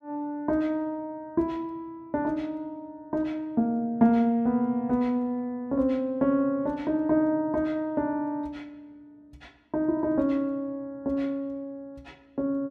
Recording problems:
none

